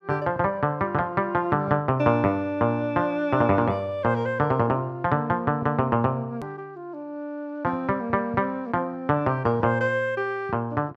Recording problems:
hard cut with a click; at 6.5 s

